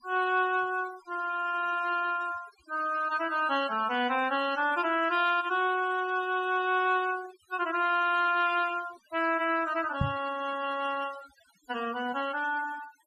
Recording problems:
noise reduction artefacts; signal-to-artefact ratio 17 dB
knock on the microphone; at 10 s; peak +3 dB vs average level

